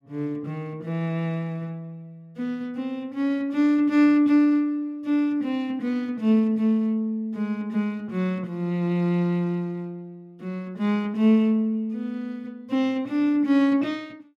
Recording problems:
none

